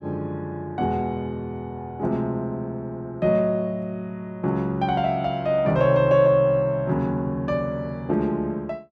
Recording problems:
none

